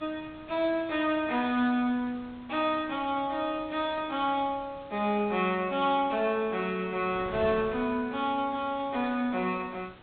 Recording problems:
low-pass filter; nothing above 4 kHz
hiss; SNR 27 dB
wind on the microphone; below 1.1 kHz, SNR 21 dB

